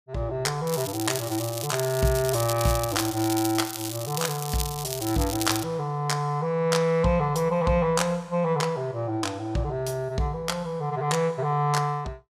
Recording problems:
crackle; from 0.5 to 5.5 s; loose cable, SNR 7 dB

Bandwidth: 15 kHz